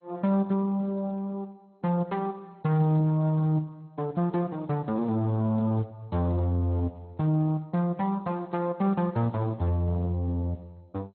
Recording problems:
lossy codec; Speex, then MP2, log-spectral distance 2 dB, nothing above 4.1 kHz

